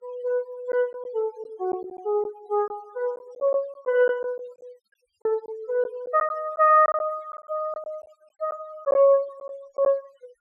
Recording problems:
denoising artefacts; signal-to-artefact ratio 27 dB
packet loss; 6% of the sound replaced, filled with silence

